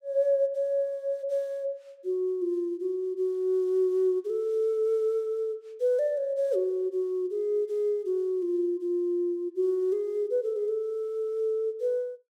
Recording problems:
none

